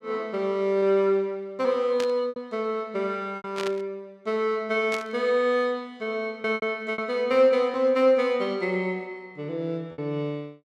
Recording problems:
packet loss; 4% of the sound replaced, filled with repeated pitch periods
static burst; at 2 s, at 3.5 s and at 5 s; peak -4 dB vs average level

